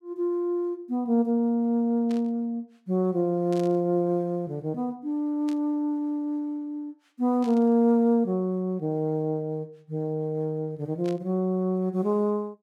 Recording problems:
static burst; 5 times, first at 2 s; peak -14 dB vs average level

